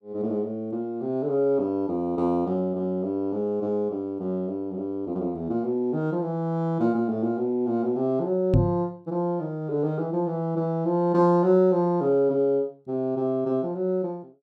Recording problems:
knock on the microphone; at 8.5 s; peak +8 dB vs average level

